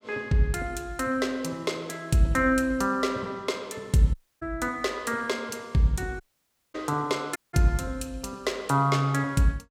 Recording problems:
audio cutting out; at 4 s, at 6 s for 0.5 s and at 7.5 s

